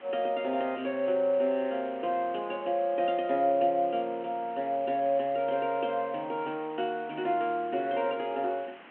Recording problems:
phone line; 190 Hz to 3.3 kHz, G.726
hiss; SNR 22 dB

